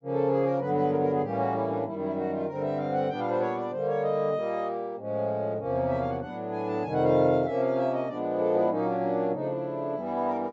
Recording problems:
treble missing; nothing above 8 kHz

